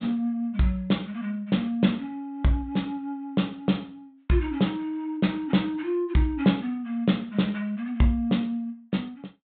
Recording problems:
treble missing; nothing above 4 kHz

